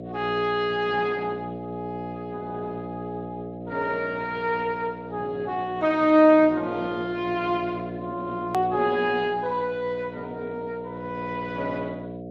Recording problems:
codec artefacts; AAC, then Speex, log-spectral distance 2 dB, nothing above 13.7 kHz
electrical hum; 60 Hz, harmonics up to 720 Hz, SNR 11 dB
hard cut with a click; at 8.5 s

